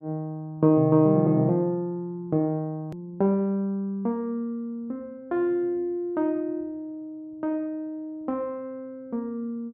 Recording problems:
edit click; at 3 s

